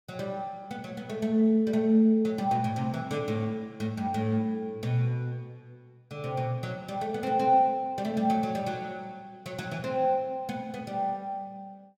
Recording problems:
none

